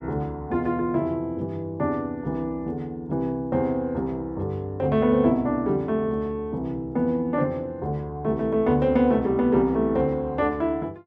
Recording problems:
none

